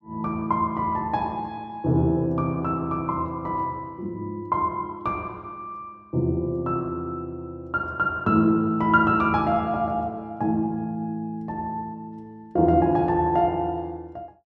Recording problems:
none

